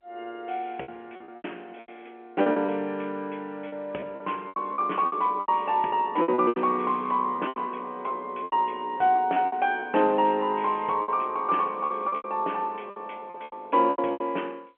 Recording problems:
telephone audio; 260 Hz to 3.2 kHz, G.711
lost packets; 13% of the sound replaced, filled with repeated pitch periods

